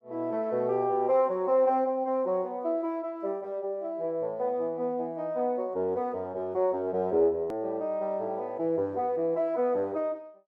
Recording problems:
click at an edit; at 7.5 s

